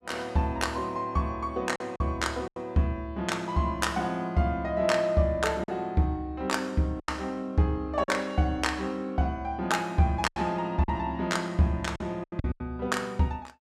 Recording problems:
lost packets; 5% of the sound replaced, filled with silence

